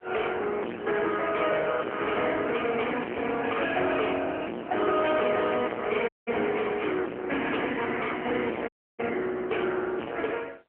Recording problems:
phone line; 240 Hz to 3.1 kHz, AMR-NB
distorted audio; soft clipping, signal-to-distortion ratio 4 dB
dropout; at 6 s and at 8.5 s

